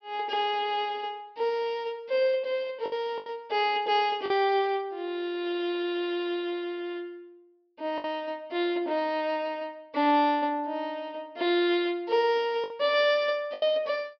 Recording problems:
low-pass filter; nothing above 5.5 kHz
lost packets; 3% of the sound replaced, filled with the last packet

